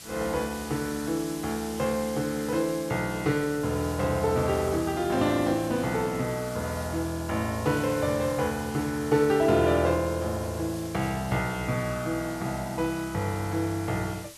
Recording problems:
background hiss; slope +1 dB per octave, SNR 15 dB

